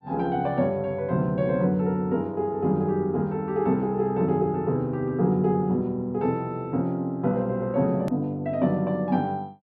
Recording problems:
edit click; at 8 s

